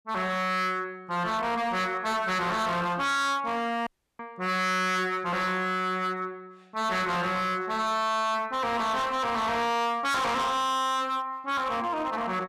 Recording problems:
distortion; hard clipping, signal-to-distortion ratio 7 dB
dropout; at 4 s

